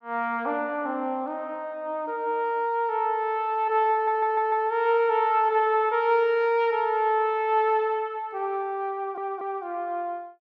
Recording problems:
stutter; at 4 s and at 9 s

